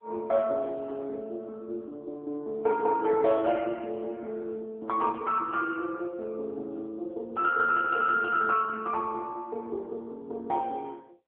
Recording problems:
phone line; 280 Hz to 2.8 kHz, AMR-NB

